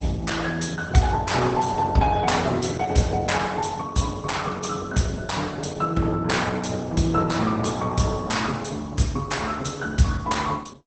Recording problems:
lossy codec; Opus, log-spectral distance 5 dB, nothing above 8.2 kHz

